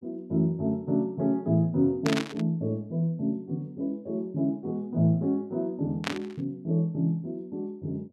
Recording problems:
static burst; at 2 s and at 6 s; peak +3 dB vs average level

